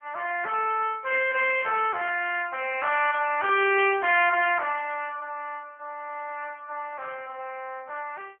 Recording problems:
phone line; 340 Hz to 3.4 kHz, AMR-NB

